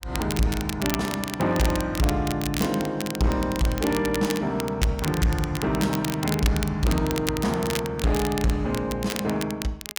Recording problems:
distorted audio; hard clipping, uneven, signal-to-distortion ratio 10 dB
crackling; vinyl, SNR 9 dB

